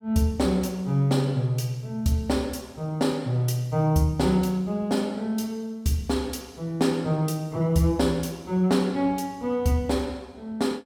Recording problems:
none

